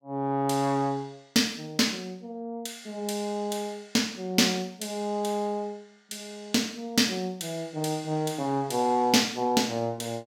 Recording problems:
none

